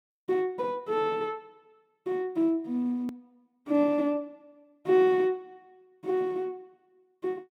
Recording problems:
edit click; at 3 s

